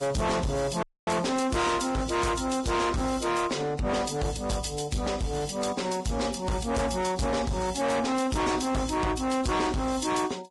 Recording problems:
lossy compression; Vorbis, log-spectral distance 5 dB, nothing above 10.7 kHz
distortion; hard clipping, signal-to-distortion ratio 6 dB
dropout; at 1 s

